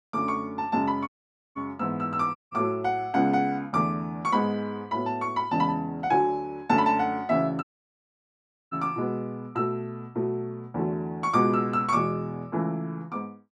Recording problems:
dropout; at 1 s, at 2.5 s and at 7.5 s for 1 s

